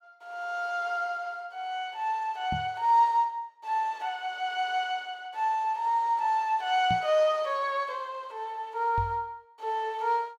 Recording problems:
microphone bump; at 2.5 s, at 7 s and at 9 s; peak -2 dB vs average level

